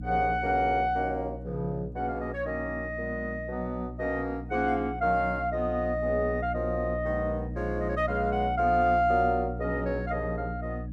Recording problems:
electrical hum; 60 Hz, harmonics up to 300 Hz, SNR 9 dB

